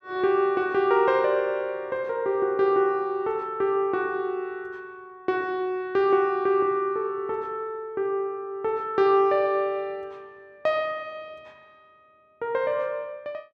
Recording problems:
none

